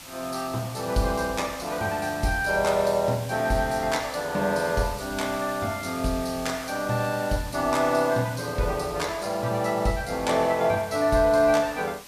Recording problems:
background hiss; SNR 16 dB

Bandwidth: 14.5 kHz